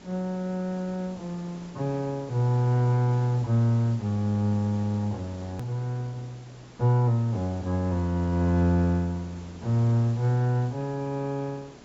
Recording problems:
low-pass filter; nothing above 8 kHz
hum; 60 Hz, harmonics up to 1.4 kHz, SNR 31 dB
background hiss; slope -5 dB per octave, SNR 21 dB
edit click; at 5.5 s

